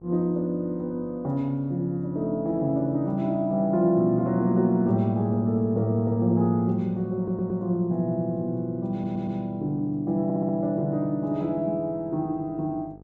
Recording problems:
hum; 50 Hz, harmonics up to 950 Hz, SNR 26 dB
audio stuttering; at 7 s, at 9 s and at 10 s

